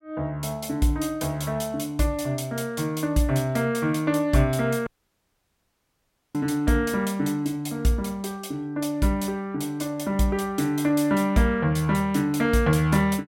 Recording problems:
dropout; at 5 s for 1.5 s

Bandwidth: 16.5 kHz